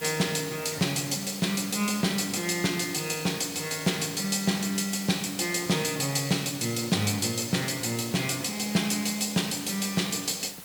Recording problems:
hiss; slope -1 dB per octave, SNR 14 dB

